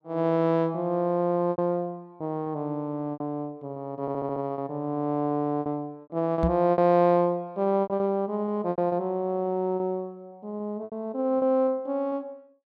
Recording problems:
packet loss; 9% of the sound replaced, filled with repeated pitch periods
audio stuttering; at 4 s
microphone thump; at 6.5 s; peak +4 dB vs average level

